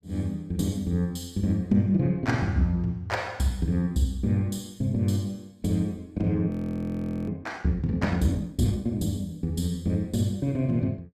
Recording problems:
audio freezing; at 6.5 s for 1 s

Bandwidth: 14.5 kHz